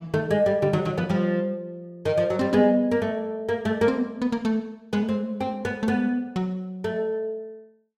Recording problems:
none

